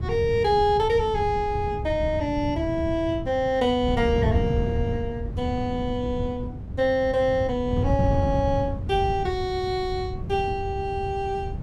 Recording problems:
wind on the microphone; below 150 Hz, SNR 5 dB

